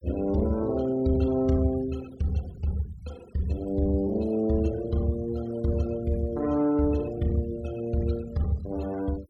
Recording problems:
denoising artefacts; signal-to-artefact ratio 23 dB

